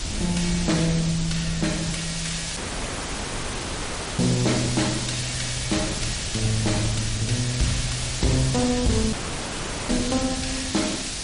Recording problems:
lossy codec; MP3, log-spectral distance 12 dB, nothing above 10.4 kHz
distorted audio; hard clipping, signal-to-distortion ratio 12 dB
background hiss; slope +1 dB per octave, SNR 4 dB
wind on the microphone; below 160 Hz, SNR 10 dB
dropout; at 2.5 s for 1.5 s and at 9 s for 1 s

